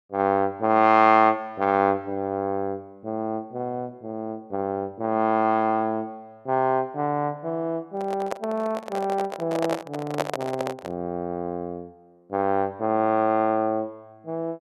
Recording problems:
handling noise; from 8 to 11 s; peak +3 dB vs average level

